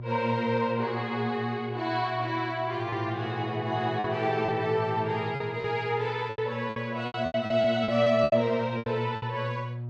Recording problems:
electrical hum; 60 Hz, harmonics up to 600 Hz, SNR 11 dB
packet loss; 8% of the sound replaced, filled with repeated pitch periods

